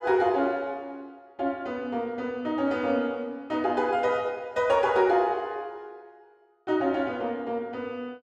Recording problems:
none

